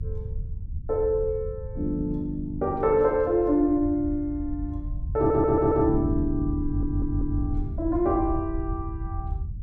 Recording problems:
low-frequency rumble; below 94 Hz, SNR 8 dB
audio stuttering; at 5 s and at 6.5 s

